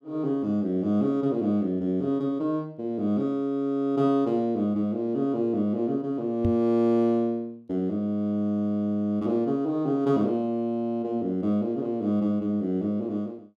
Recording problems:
knock on the microphone; at 6.5 s; peak +3 dB vs average level

